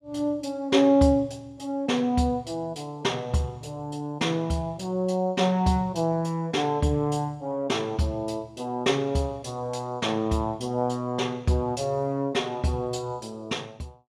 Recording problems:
none

